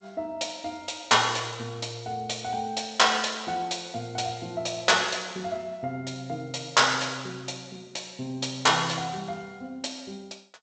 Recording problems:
lossy compression; G.722, log-spectral distance 7 dB, nothing above 7.8 kHz

